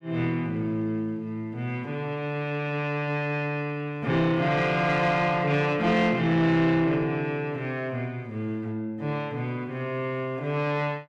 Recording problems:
distorted audio; soft clipping, signal-to-distortion ratio 11 dB

